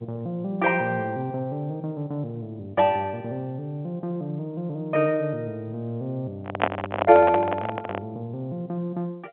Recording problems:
phone line; 220 Hz to 3.9 kHz, G.711
microphone handling noise; from 6.5 to 8 s; peak +8 dB vs average level

